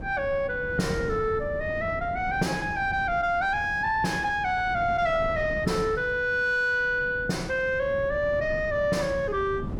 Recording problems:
distorted audio; soft clipping, signal-to-distortion ratio 10 dB
wind noise; below 240 Hz, SNR 12 dB

